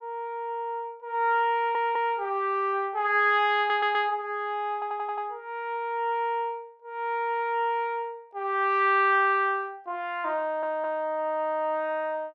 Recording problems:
audio stuttering; 4 times, first at 1.5 s

